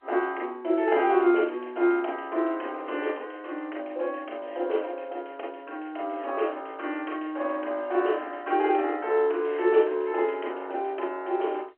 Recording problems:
telephone audio; 300 Hz to 3.2 kHz, G.711

